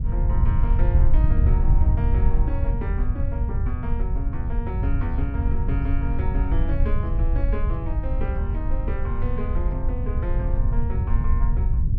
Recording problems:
wind noise; below 78 Hz, SNR -9 dB

